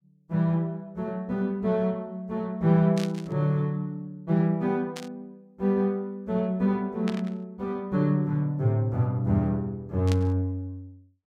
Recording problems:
burst of static; 4 times, first at 3 s; peak -5 dB vs average level

